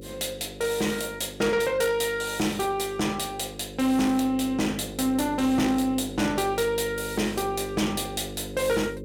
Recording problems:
distortion; soft clipping, signal-to-distortion ratio 10 dB
hum; 50 Hz, harmonics up to 550 Hz, SNR 13 dB

